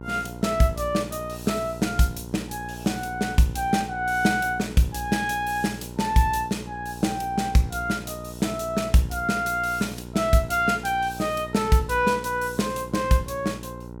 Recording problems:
hum; 60 Hz, harmonics up to 1.4 kHz, SNR 14 dB

